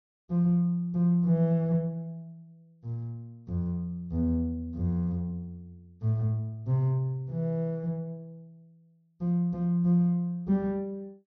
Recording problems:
low-pass filter; nothing above 6.2 kHz

